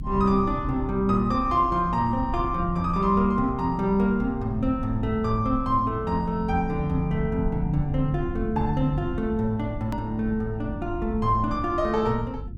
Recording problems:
mains hum; 50 Hz, harmonics up to 350 Hz, SNR 15 dB
low-frequency rumble; below 110 Hz, SNR 11 dB
edit click; at 10 s

